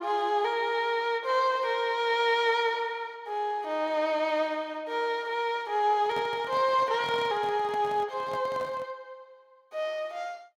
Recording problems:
handling noise; from 6 to 9 s; peak -10 dB vs average level

